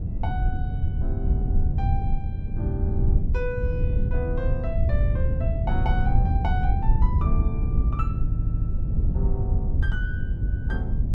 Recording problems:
wind on the microphone; below 94 Hz, SNR -9 dB
stutter; at 8.5 s

